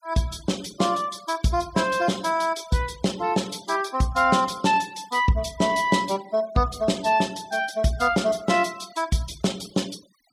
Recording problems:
noise reduction artefacts; signal-to-artefact ratio 21 dB

